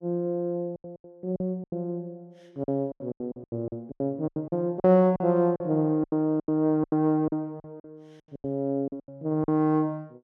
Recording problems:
packet loss; 17% of the sound replaced, filled with silence

